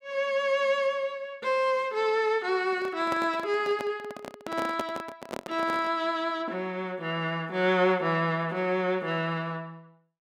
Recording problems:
handling noise; from 2.5 to 6 s; peak -1 dB vs average level

